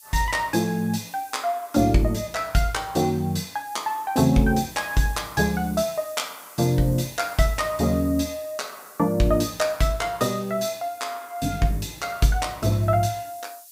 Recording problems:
background hiss; SNR 20 dB

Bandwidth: 15.5 kHz